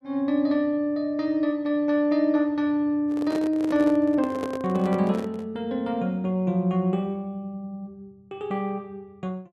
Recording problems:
handling noise; from 3 to 5.5 s; peak -4 dB vs average level

